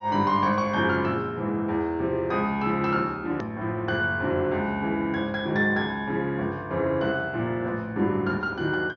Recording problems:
treble cut off; nothing above 6.4 kHz
click at an edit; at 3.5 s

